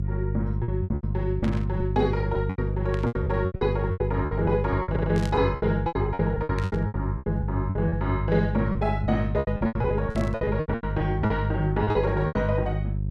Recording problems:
electrical hum; 50 Hz, harmonics up to 400 Hz, SNR 1 dB
lost packets; 17% of the sound replaced, filled with repeated pitch periods
static burst; 5 times, first at 1.5 s; peak -6 dB vs average level
stutter; at 5 s

